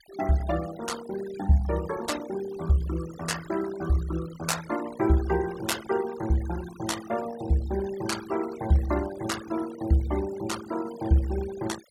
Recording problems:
noise reduction artefacts; signal-to-artefact ratio 15 dB

